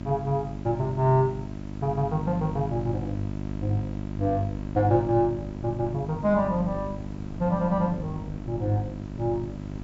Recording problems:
treble missing; nothing above 8 kHz
hum; 50 Hz, harmonics up to 1 kHz, SNR 8 dB
background hiss; slope -4 dB per octave, SNR 26 dB
wind noise; below 270 Hz, SNR 19 dB

